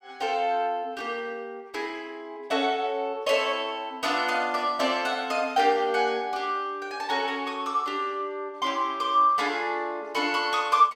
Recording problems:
none

